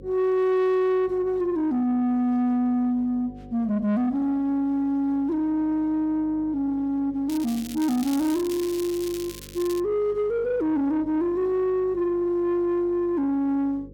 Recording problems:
distortion; soft clipping, signal-to-distortion ratio 12 dB
hum; 50 Hz, harmonics up to 800 Hz, SNR 22 dB
crackle; from 7.5 to 10 s; loose cable, SNR 15 dB

